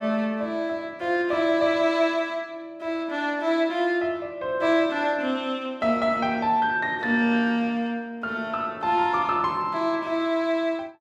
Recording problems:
none

